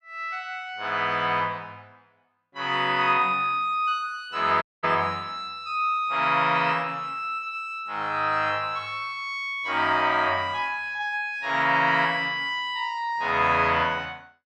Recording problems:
audio cutting out; at 4.5 s

